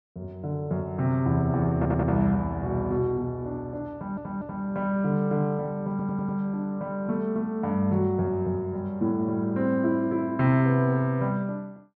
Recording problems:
audio stuttering; at 2 s, at 4 s and at 6 s

